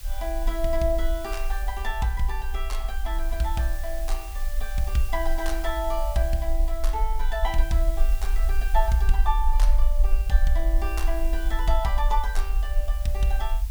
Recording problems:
background hiss; slope +1 dB per octave, SNR 14 dB
low-frequency rumble; below 46 Hz, strongest tone 22 Hz, SNR -2 dB

